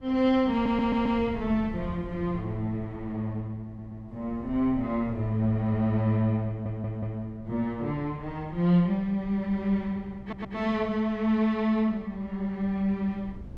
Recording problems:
wind noise; below 150 Hz, SNR 18 dB
stutter; 4 times, first at 0.5 s

